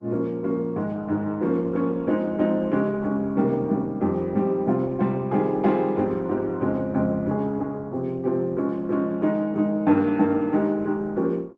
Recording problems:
lossy codec; Opus, log-spectral distance 2 dB

